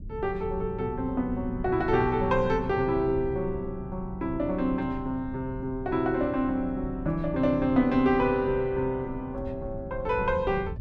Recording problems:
low-frequency rumble; below 140 Hz, SNR 12 dB

